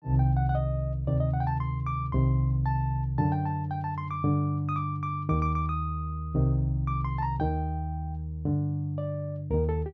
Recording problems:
none

